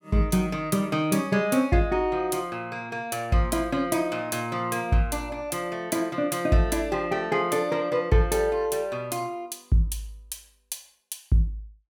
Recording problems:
none

